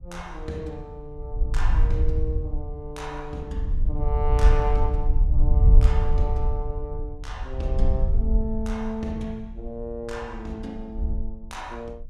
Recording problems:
wind noise; below 60 Hz, SNR -8 dB

